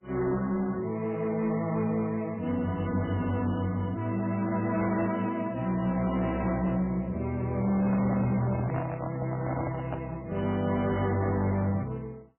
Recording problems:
codec artefacts; MP3, log-spectral distance 3 dB, nothing above 2.7 kHz
distorted audio; hard clipping, signal-to-distortion ratio 11 dB
microphone handling noise; from 7.5 to 10 s; peak -1 dB vs average level

